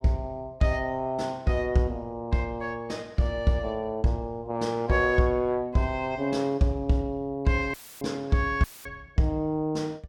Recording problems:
dropout; at 7.5 s and at 8.5 s; filled with static

